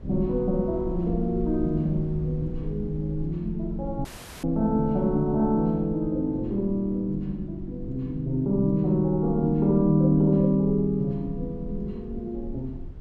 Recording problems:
rumble; below 70 Hz, SNR 14 dB
audio cutting out; at 4 s

